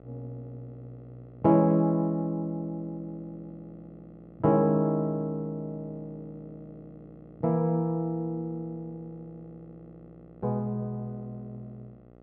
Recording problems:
hum; 60 Hz, harmonics up to 1.4 kHz, SNR 25 dB

